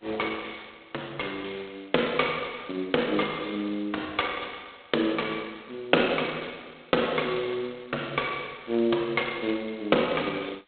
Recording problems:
phone line; 320 Hz to 3.8 kHz, G.726

